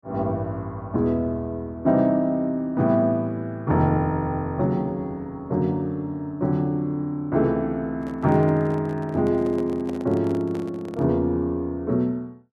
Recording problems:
microphone handling noise; from 8 to 11 s; peak -10 dB vs average level

